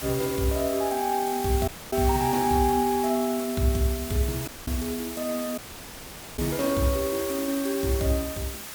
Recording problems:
background hiss; slope 0 dB per octave, SNR 8 dB
dropout; at 1.5 s, at 4.5 s and at 5.5 s for 1 s

